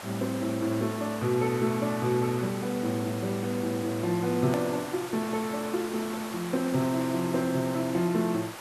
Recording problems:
hiss; SNR 11 dB
click at an edit; at 4.5 s

